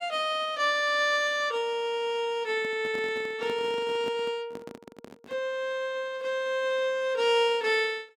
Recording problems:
microphone handling noise; from 2.5 to 5.5 s; peak -8 dB vs average level

